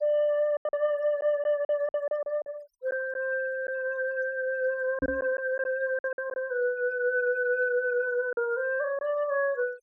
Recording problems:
denoising artefacts; signal-to-artefact ratio 26 dB
packet loss; 7% of the sound replaced, filled with silence
microphone bump; at 5 s; peak 0 dB vs average level

